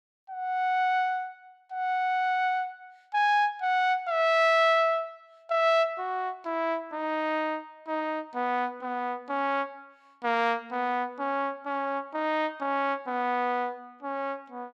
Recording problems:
none

